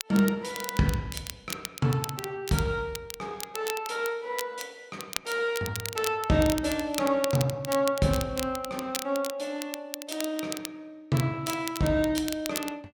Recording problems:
crackling; vinyl, SNR 9 dB

